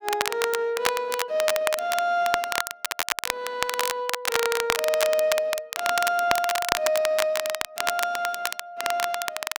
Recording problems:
crackle; vinyl, SNR 2 dB

